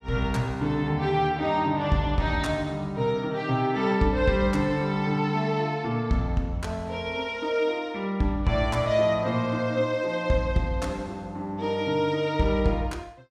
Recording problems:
none

